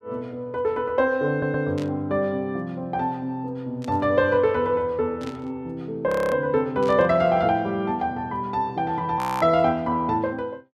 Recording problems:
stutter; at 1.5 s
static burst; 4 times, first at 2 s; peak -12 dB vs average level
frozen audio; at 6 s and at 9 s

